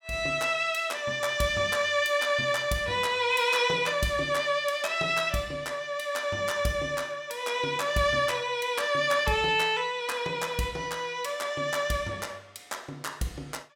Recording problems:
none

